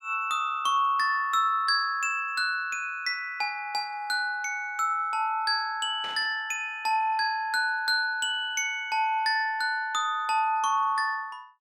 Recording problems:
static burst; at 6 s; peak -11 dB vs average level

